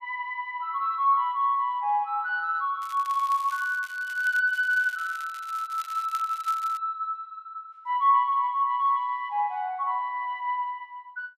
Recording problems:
crackle; from 3 to 4.5 s and from 4.5 to 7 s; loose cable, SNR 21 dB

